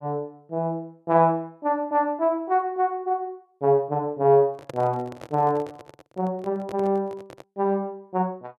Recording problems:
microphone handling noise; from 4.5 to 7.5 s; peak -8 dB vs average level

